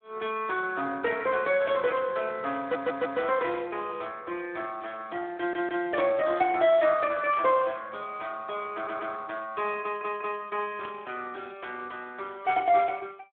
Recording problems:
phone line; 240 Hz to 3.3 kHz, Speex
burst of static; 4 times, first at 2 s; peak -8 dB vs average level
stutter; 4 times, first at 2.5 s

